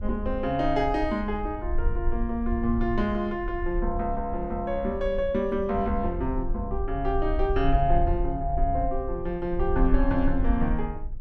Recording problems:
rumble; below 52 Hz, strongest tone 20 Hz, SNR 5 dB

